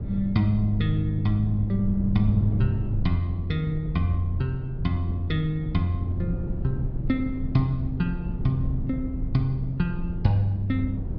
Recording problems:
treble cut off; nothing above 5.5 kHz
wind on the microphone; below 130 Hz, SNR 6 dB

